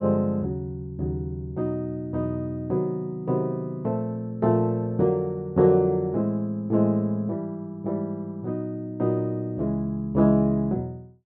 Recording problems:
none

